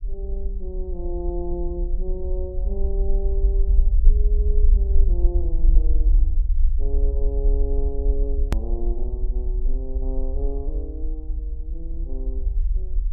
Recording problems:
rumble; below 48 Hz, SNR -10 dB
edit click; at 8.5 s

